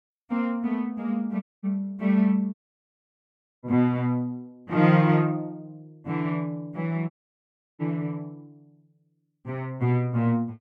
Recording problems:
audio cutting out; at 1.5 s, at 2.5 s for 1 s and at 7 s for 0.5 s

